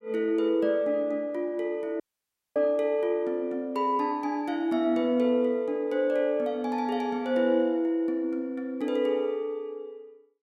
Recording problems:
audio cutting out; at 2 s for 0.5 s

